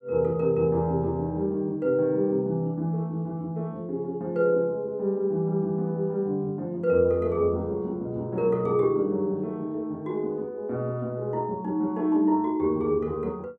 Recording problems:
none

